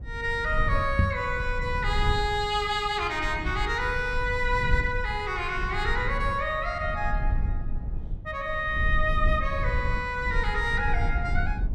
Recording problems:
rumble; below 76 Hz, SNR 5 dB
microphone thump; at 1 s; peak +7 dB vs average level

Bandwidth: 14 kHz